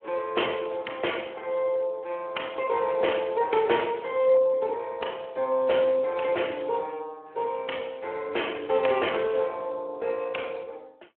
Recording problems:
telephone audio; 300 Hz to 3.2 kHz, Speex

